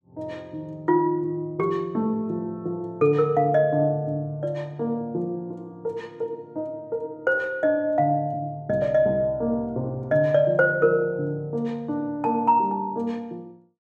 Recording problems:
none

